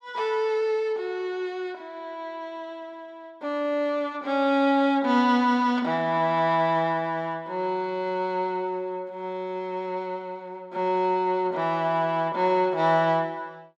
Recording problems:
none

